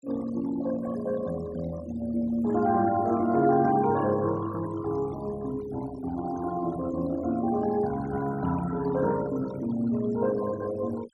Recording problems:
noise reduction artefacts; signal-to-artefact ratio 17 dB

